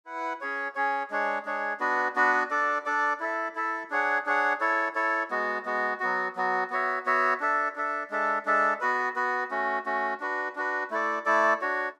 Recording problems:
none

